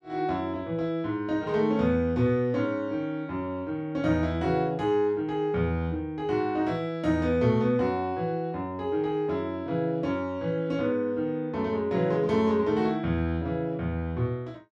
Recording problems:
none

